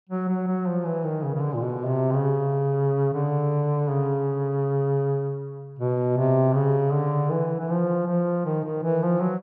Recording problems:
none

